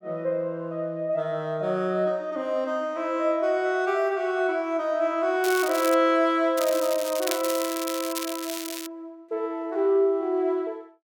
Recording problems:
crackling; at 5.5 s and from 6.5 to 9 s; loose cable, SNR 9 dB

